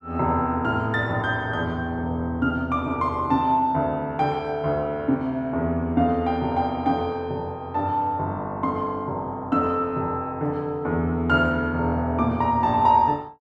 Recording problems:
none

